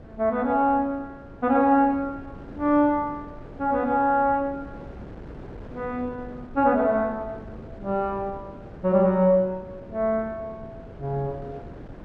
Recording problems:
wind on the microphone; below 440 Hz, SNR 19 dB

